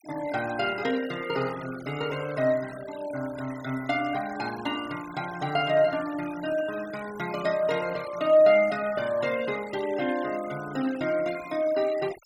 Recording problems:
noise reduction artefacts; signal-to-artefact ratio 17 dB

